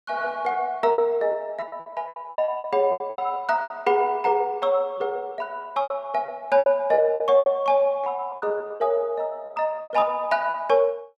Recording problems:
packet loss; 15% of the sound replaced, filled with repeated pitch periods

